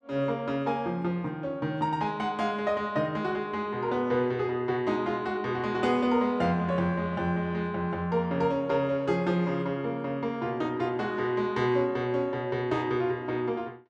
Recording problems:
none

